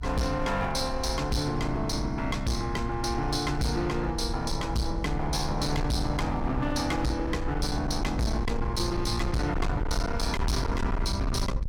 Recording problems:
distortion; hard clipping, signal-to-distortion ratio 7 dB
low-frequency rumble; below 78 Hz, SNR 5 dB

